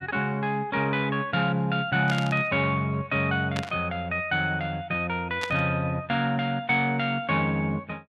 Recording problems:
burst of static; at 2 s, at 3.5 s and at 5.5 s; peak -3 dB vs average level

